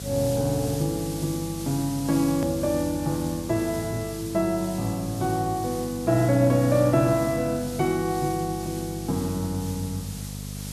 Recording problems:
hum; 50 Hz, harmonics up to 550 Hz, SNR 12 dB
hiss; SNR 13 dB
edit click; at 2.5 s

